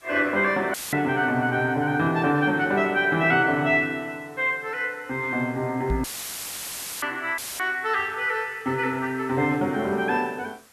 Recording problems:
background hiss; SNR 29 dB
audio cutting out; at 0.5 s, at 6 s for 1 s and at 7.5 s; filled with static
knock on the microphone; at 6 s; peak 0 dB vs average level

